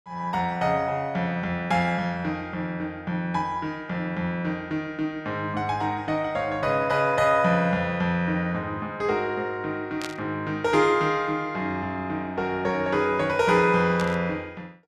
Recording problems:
static burst; at 10 s and at 14 s; peak -5 dB vs average level

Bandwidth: 14 kHz